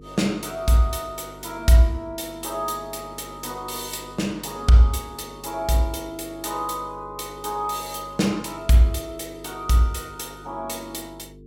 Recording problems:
electrical hum; 50 Hz, harmonics up to 450 Hz, SNR 21 dB

